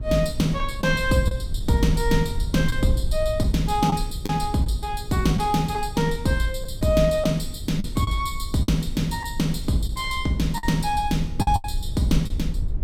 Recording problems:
electrical hum; 60 Hz, harmonics up to 1.2 kHz, SNR 24 dB
rumble; below 68 Hz, SNR 8 dB
packet loss; 5% of the sound replaced, filled with the last packet

